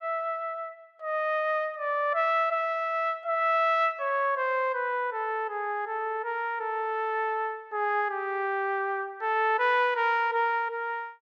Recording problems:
none

